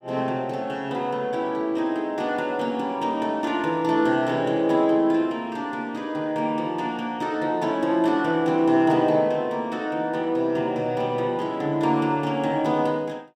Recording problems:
none

